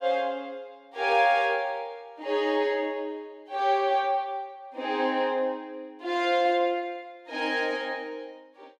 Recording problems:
none

